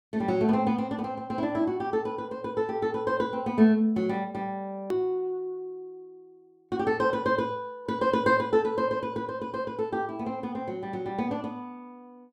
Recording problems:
edit click; at 5 s

